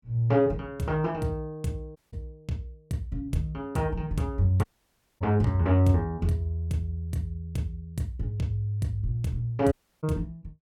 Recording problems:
audio cutting out; at 2 s, at 4.5 s for 0.5 s and at 9.5 s

